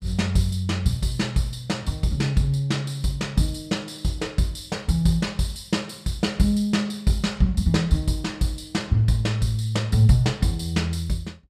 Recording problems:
none

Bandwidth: 15 kHz